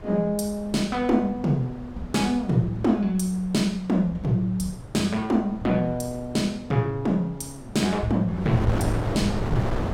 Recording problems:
wind noise; below 490 Hz, SNR 10 dB

